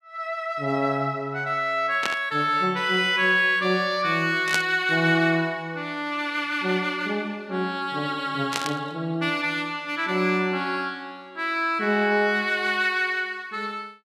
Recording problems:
burst of static; at 2 s, at 4.5 s and at 8.5 s; peak +3 dB vs average level

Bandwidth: 15 kHz